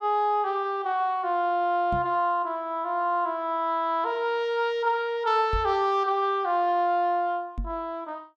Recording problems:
microphone bump; at 2 s, at 5.5 s and at 7.5 s; peak -2 dB vs average level

